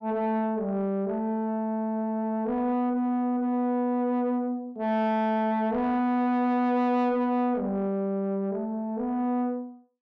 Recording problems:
distorted audio; soft clipping, signal-to-distortion ratio 11 dB

